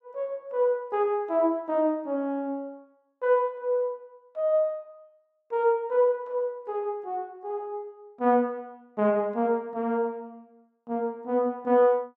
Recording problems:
none

